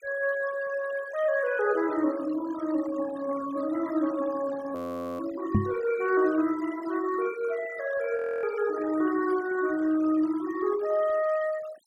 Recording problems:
noise reduction artefacts; signal-to-artefact ratio 17 dB
audio freezing; at 5 s and at 8 s
knock on the microphone; at 5.5 s; peak +8 dB vs average level

